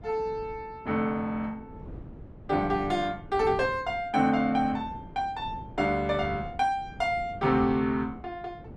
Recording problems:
wind on the microphone; below 290 Hz, SNR 16 dB

